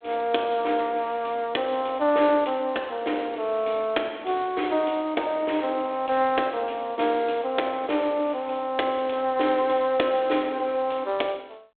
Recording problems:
phone line; 260 Hz to 3.6 kHz, G.726

